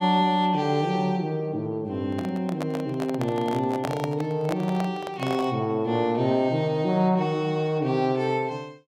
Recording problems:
microphone handling noise; from 2 to 5.5 s; peak -1 dB vs average level

